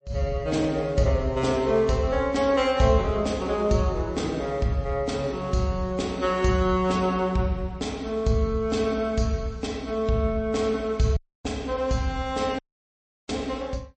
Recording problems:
lossy compression; MP3, log-spectral distance 2 dB, nothing above 8.2 kHz
audio cutting out; at 11 s and at 13 s for 0.5 s

